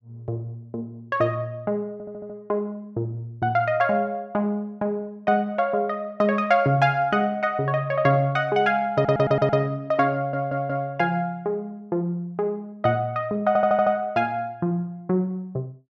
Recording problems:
stutter; 4 times, first at 2 s

